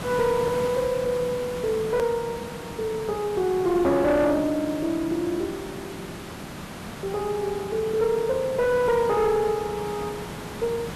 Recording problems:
distortion; soft clipping, signal-to-distortion ratio 11 dB
hiss; slope -5 dB per octave, SNR 11 dB
edit click; at 2 s

